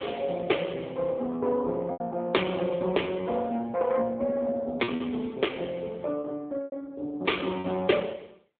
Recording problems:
phone line; 170 Hz to 3.6 kHz, AMR-NB
lost packets; 4% of the sound replaced, filled with repeated pitch periods

